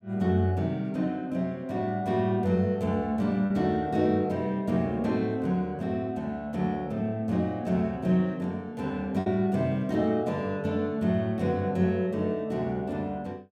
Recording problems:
packet loss; 0.7% of the sound replaced, filled with repeated pitch periods

